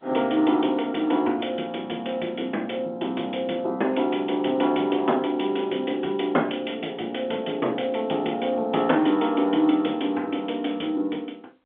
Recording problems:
phone line; 240 Hz to 3.5 kHz, G.711

